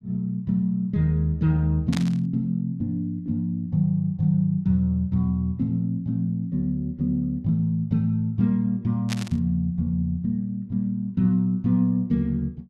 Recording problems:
static burst; at 2 s and at 9 s; peak -2 dB vs average level

